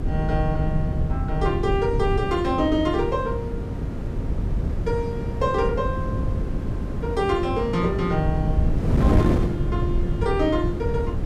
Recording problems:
rumble; below 110 Hz, SNR 5 dB
wind on the microphone; below 260 Hz, SNR 2 dB

